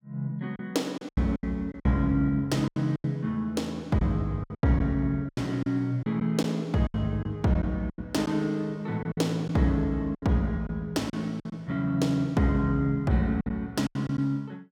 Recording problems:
lost packets; 10% of the sound replaced, filled with silence

